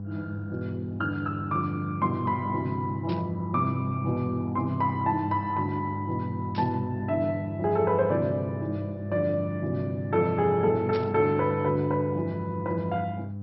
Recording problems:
codec artefacts; MP2, log-spectral distance 2 dB, nothing above 5.3 kHz
hum; 50 Hz, harmonics up to 500 Hz, SNR 8 dB
static burst; at 3 s, at 6.5 s and at 11 s; peak -9 dB vs average level

